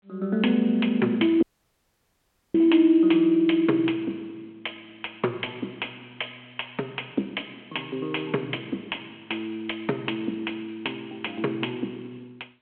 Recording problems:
phone line; 240 Hz to 3.3 kHz, G.726
dropout; at 1.5 s for 1 s

